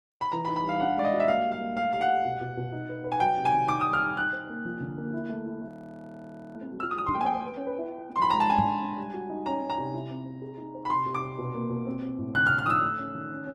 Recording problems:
lossy compression; Opus, log-spectral distance 2 dB, nothing above 14.1 kHz
frozen audio; at 5.5 s for 1 s
microphone thump; at 7 s and at 8.5 s; peak +1 dB vs average level

